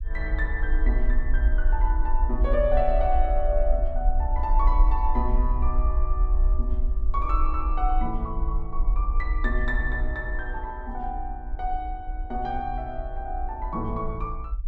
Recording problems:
low-frequency rumble; below 50 Hz, SNR -3 dB

